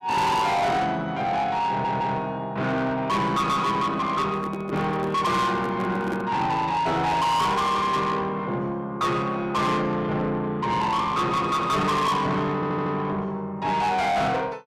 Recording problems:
distorted audio; soft clipping, signal-to-distortion ratio 7 dB
audio stuttering; at 1.5 s and at 13 s
handling noise; from 4.5 to 6.5 s; peak -3 dB vs average level

